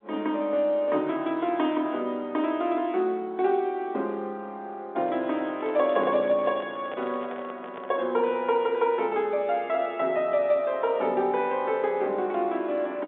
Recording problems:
phone line; 240 Hz to 3.7 kHz, G.711
microphone handling noise; from 5 to 8 s; peak -10 dB vs average level

